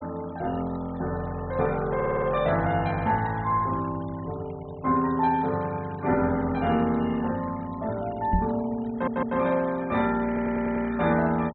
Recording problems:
treble missing; nothing above 3.9 kHz
noise reduction artefacts; signal-to-artefact ratio 21 dB
stutter; at 2 s, at 9 s and at 10 s
knock on the microphone; at 8.5 s; peak +4 dB vs average level

